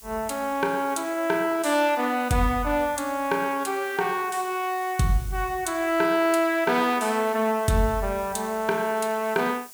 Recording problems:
hiss; SNR 19 dB

